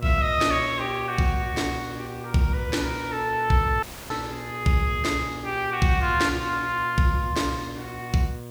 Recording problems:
electrical hum; 60 Hz, harmonics up to 1.2 kHz, SNR 14 dB
hiss; SNR 25 dB
dropout; at 4 s

